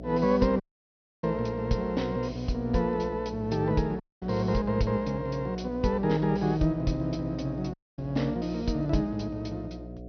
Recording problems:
low-pass filter; nothing above 6.1 kHz
hum; 60 Hz, harmonics up to 720 Hz, SNR 12 dB
dropout; at 0.5 s for 0.5 s, at 4 s and at 7.5 s

